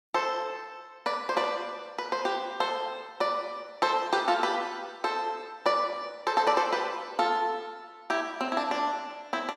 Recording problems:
none

